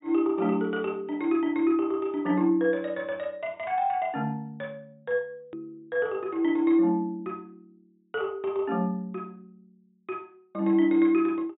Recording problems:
low-pass filter; nothing above 4 kHz
click at an edit; at 5.5 s

